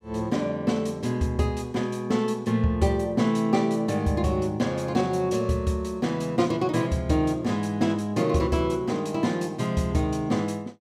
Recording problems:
none

